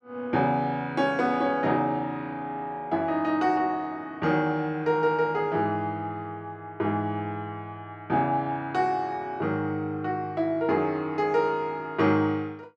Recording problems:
none

